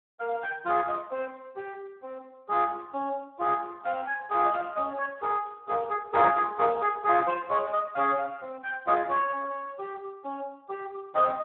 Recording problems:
telephone audio; 260 Hz to 2.5 kHz, Speex

